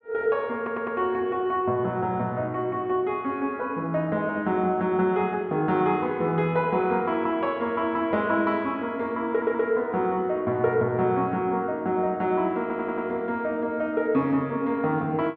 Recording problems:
audio stuttering; at 0.5 s, at 9.5 s and at 13 s

